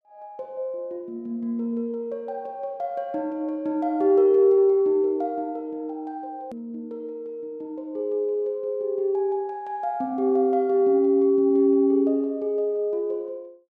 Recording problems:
click at an edit; at 6.5 s

